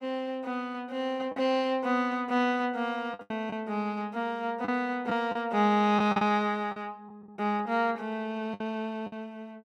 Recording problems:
packet loss; 6% of the sound replaced, filled with the last packet

